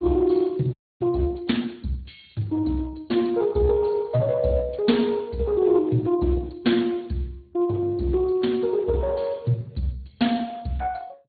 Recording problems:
treble missing; nothing above 4.5 kHz
codec artefacts; Speex, log-spectral distance 3 dB
frozen audio; at 0.5 s

